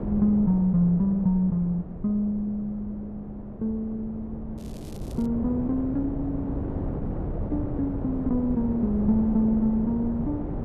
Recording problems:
wind noise; below 310 Hz, SNR 8 dB
crackle; at 4.5 s; loose cable, SNR 27 dB

